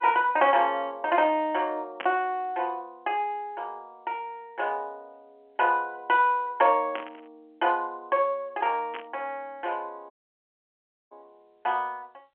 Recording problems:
phone line; 190 Hz to 3.3 kHz, G.711
burst of static; at 2 s, at 7 s and at 9 s; peak -4 dB vs average level
dropout; at 10 s for 1 s

